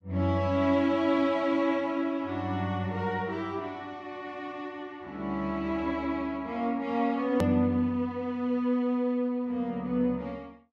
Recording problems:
hard cut with a click; at 7.5 s

